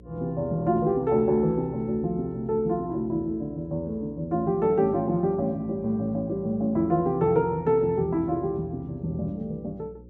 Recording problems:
hum; 60 Hz, harmonics up to 540 Hz, SNR 22 dB

